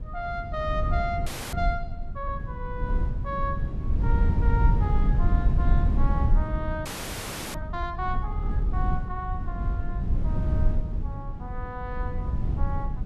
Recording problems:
low-frequency rumble; below 88 Hz, SNR -6 dB
frozen audio; at 1.5 s and at 7 s for 0.5 s

